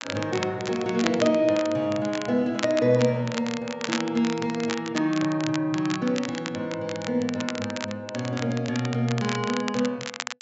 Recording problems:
low-pass filter; nothing above 8 kHz
crackle; vinyl, SNR 10 dB

